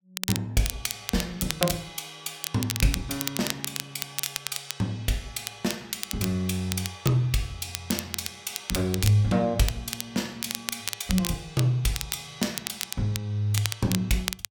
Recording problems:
crackle; vinyl, SNR 5 dB

